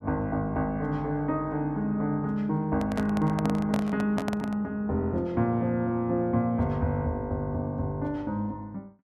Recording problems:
microphone handling noise; from 2.5 to 4.5 s; peak 0 dB vs average level

